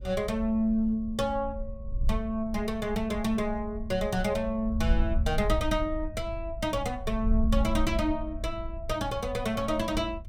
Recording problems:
wind noise; below 64 Hz, SNR 6 dB

